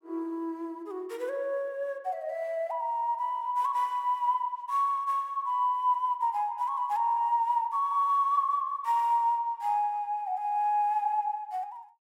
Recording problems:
none

